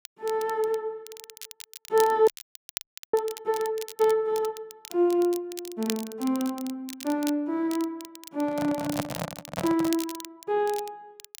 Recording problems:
crackling; vinyl, SNR 14 dB
frozen audio; at 2.5 s for 1 s
microphone handling noise; from 8.5 to 10 s; peak +2 dB vs average level

